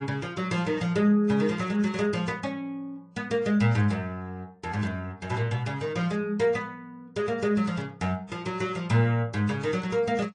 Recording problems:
lossy compression; MP3, then AAC, log-spectral distance 2 dB, nothing above 9 kHz

